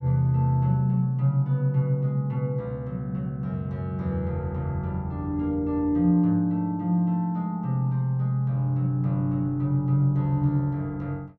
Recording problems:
none

